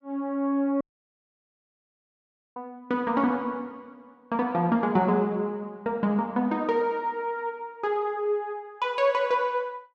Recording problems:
audio cutting out; at 1 s for 2 s

